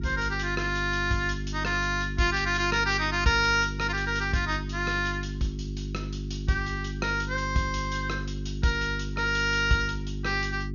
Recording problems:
treble cut off; nothing above 6.7 kHz
hum; 50 Hz, harmonics up to 400 Hz, SNR 7 dB

